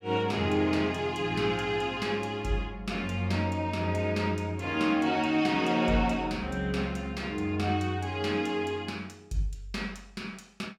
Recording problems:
none

